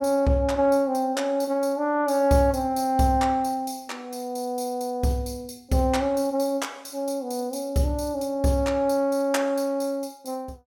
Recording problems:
none

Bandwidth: 18 kHz